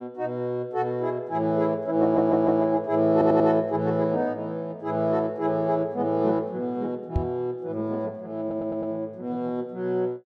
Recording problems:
stutter; at 2 s, at 3 s and at 8.5 s
microphone thump; at 7 s; peak +4 dB vs average level

